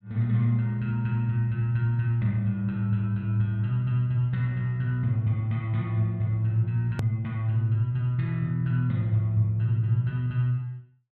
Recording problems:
edit click; at 7 s

